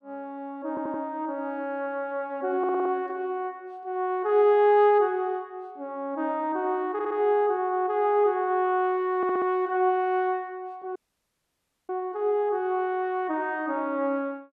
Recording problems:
stutter; 4 times, first at 0.5 s
audio cutting out; at 11 s for 1 s

